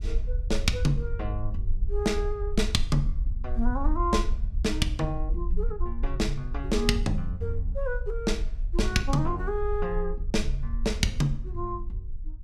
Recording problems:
rumble; below 50 Hz, SNR 3 dB

